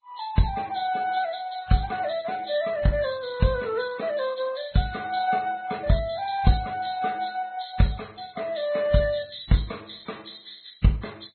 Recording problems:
lossy codec; Vorbis, then MP2, log-spectral distance 6 dB, nothing above 4.2 kHz

